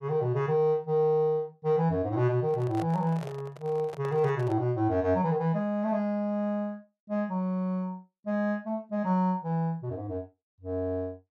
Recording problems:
microphone handling noise; from 2.5 to 4.5 s; peak -7 dB vs average level

